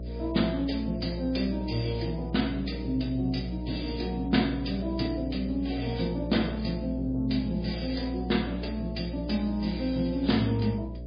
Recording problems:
lossy compression; MP3, log-spectral distance 6 dB, nothing above 4.8 kHz
hum; 60 Hz, harmonics up to 660 Hz, SNR 8 dB

